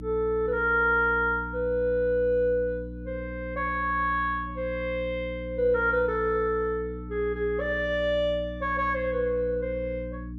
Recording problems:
hum; 60 Hz, harmonics up to 300 Hz, SNR 12 dB

